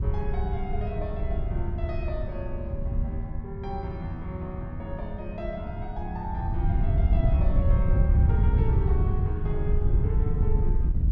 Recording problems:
wind on the microphone; below 96 Hz, SNR -8 dB

